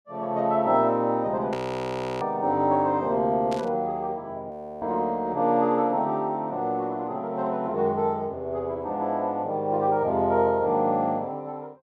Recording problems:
burst of static; at 1.5 s and at 3.5 s; peak -9 dB vs average level
audio freezing; at 1.5 s for 0.5 s and at 4.5 s

